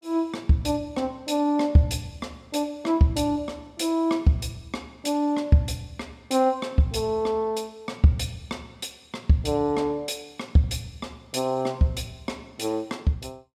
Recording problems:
none

